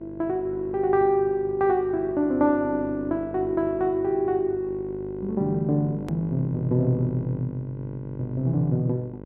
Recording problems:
mains hum; 50 Hz, harmonics up to 1.1 kHz, SNR 13 dB
hard cut with a click; at 6 s

